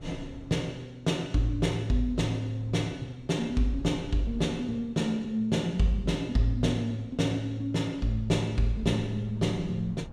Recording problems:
wind on the microphone; below 170 Hz, SNR 20 dB

